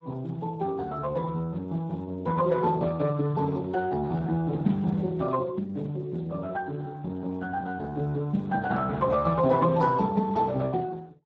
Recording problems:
lossy compression; Speex, log-spectral distance 2 dB

